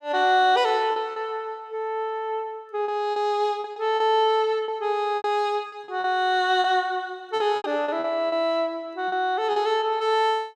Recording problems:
lost packets; 8% of the sound replaced, filled with repeated pitch periods

